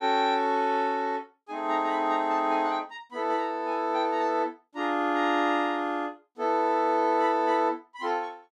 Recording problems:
none

